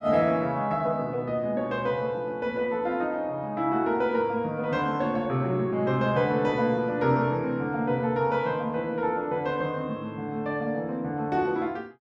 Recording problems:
none

